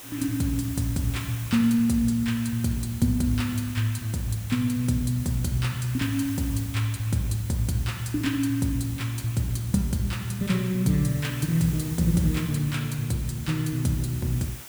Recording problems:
background hiss; slope -1 dB per octave, SNR 14 dB

